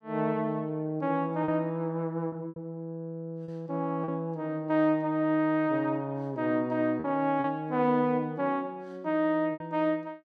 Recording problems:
lost packets; 4% of the sound replaced, filled with repeated pitch periods

